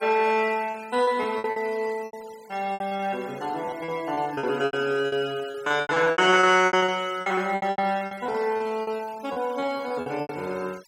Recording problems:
noise reduction artefacts; signal-to-artefact ratio 23 dB
packet loss; 18% of the sound replaced, filled with repeated pitch periods

